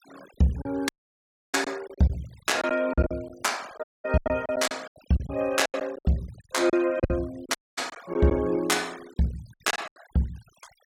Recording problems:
noise reduction artefacts; signal-to-artefact ratio 21 dB
lost packets; 13% of the sound replaced, filled with silence
dropout; at 1 s for 0.5 s, at 4 s and at 7.5 s

